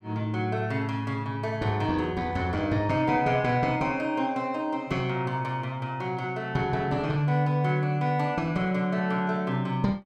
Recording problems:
none

